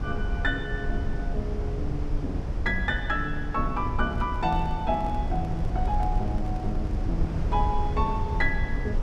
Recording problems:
low-frequency rumble; below 90 Hz, SNR 1 dB
microphone handling noise; from 4 to 7 s; peak -7 dB vs average level

